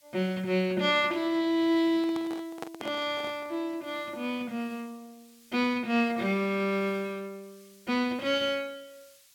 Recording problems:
background hiss; slope +4 dB per octave, SNR 28 dB
microphone handling noise; from 2 to 3.5 s; peak -4 dB vs average level

